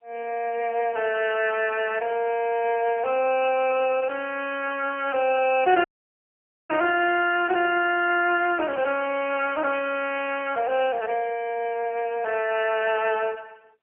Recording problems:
phone line; 300 Hz to 3.1 kHz, AMR-NB, then MP3
audio cutting out; at 6 s for 1 s

